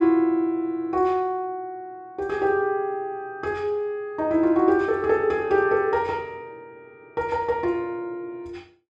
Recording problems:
none

